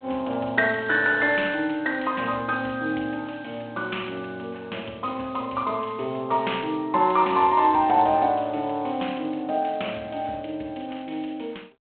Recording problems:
telephone audio; 260 Hz to 3.6 kHz, G.726

